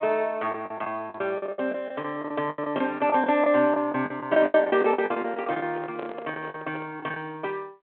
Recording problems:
phone line; 190 Hz to 3.4 kHz, G.726
lost packets; 16% of the sound replaced, filled with the last packet
microphone handling noise; from 4.5 to 7 s; peak -6 dB vs average level

